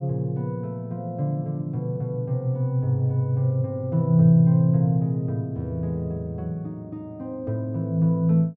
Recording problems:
none

